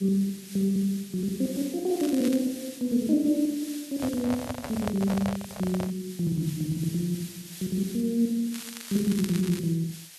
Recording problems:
hiss; SNR 15 dB
crackle; at 2 s and from 8.5 to 9.5 s; loose cable, SNR 14 dB
microphone handling noise; from 4 to 6 s; peak 0 dB vs average level

